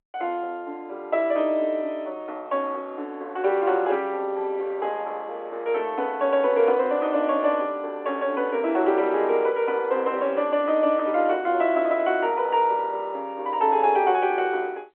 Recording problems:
telephone audio; 280 Hz to 3.3 kHz, G.711

